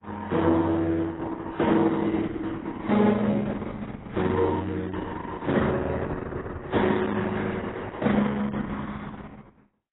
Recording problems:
lossy compression; Opus, then AAC, log-spectral distance 4 dB, nothing above 3.8 kHz

